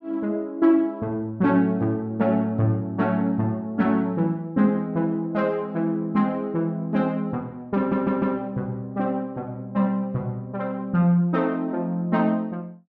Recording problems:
audio stuttering; at 8 s

